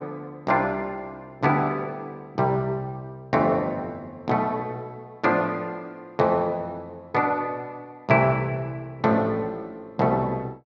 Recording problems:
none

